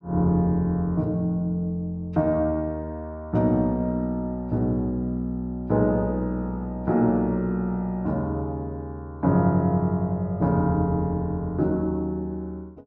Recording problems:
none

